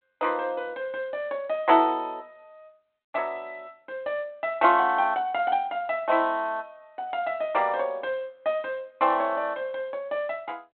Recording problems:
telephone audio; 220 Hz to 3.5 kHz, G.726

